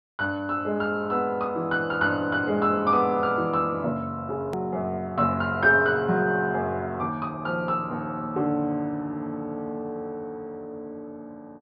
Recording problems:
low-pass filter; nothing above 5 kHz
hard cut with a click; at 4.5 s

